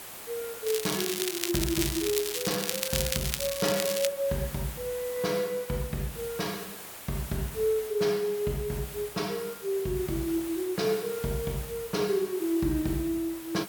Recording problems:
background hiss; slope -2 dB per octave, SNR 10 dB
crackling; from 0.5 to 4 s; loose cable, SNR 1 dB

